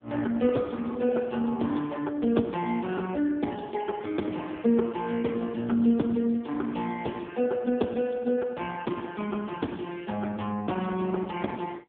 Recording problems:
phone line; 150 Hz to 3.5 kHz, AMR-NB

